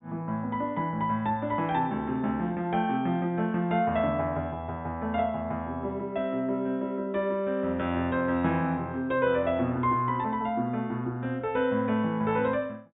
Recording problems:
low-pass filter; nothing above 4 kHz

